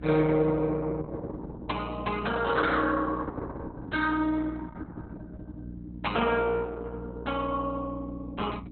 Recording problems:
codec artefacts; Opus, log-spectral distance 4 dB, nothing above 4 kHz
hum; 60 Hz, harmonics up to 420 Hz, SNR 12 dB

